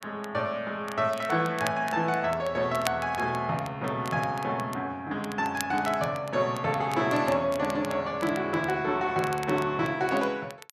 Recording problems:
crackle; vinyl, SNR 16 dB

